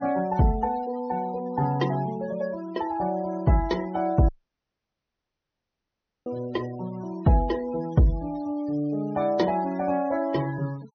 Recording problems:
treble missing; nothing above 6.3 kHz
noise reduction artefacts; signal-to-artefact ratio 20 dB
audio cutting out; at 4.5 s for 2 s

